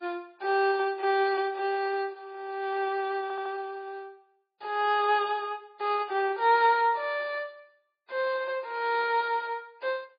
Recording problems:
lossy compression; MP3, log-spectral distance 2 dB, nothing above 4.4 kHz
audio stuttering; at 3 s

